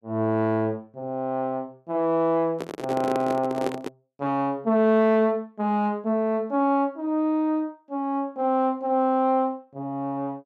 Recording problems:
microphone handling noise; from 2.5 to 4 s; peak -1 dB vs average level

